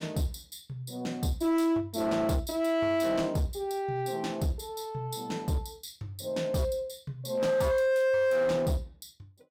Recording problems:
distorted audio; hard clipping, signal-to-distortion ratio 11 dB

